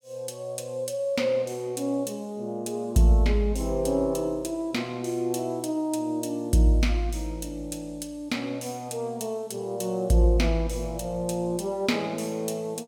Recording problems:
none

